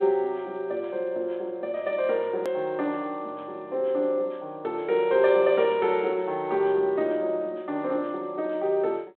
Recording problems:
telephone audio; 260 Hz to 3.6 kHz, G.726
click at an edit; at 2.5 s

